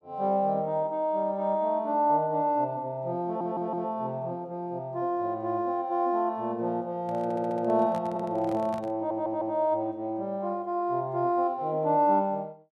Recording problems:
stutter; 4 times, first at 3.5 s
handling noise; from 7 to 9 s; peak -9 dB vs average level

